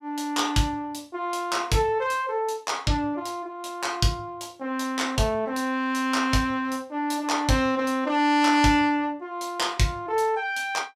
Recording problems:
none

